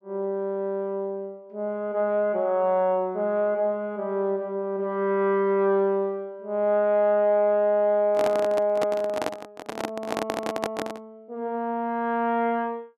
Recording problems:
handling noise; from 8 to 11 s; peak 0 dB vs average level

